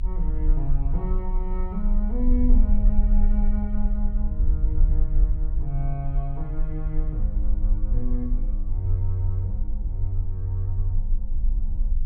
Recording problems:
low-frequency rumble; below 42 Hz, strongest tone 26 Hz, SNR -5 dB

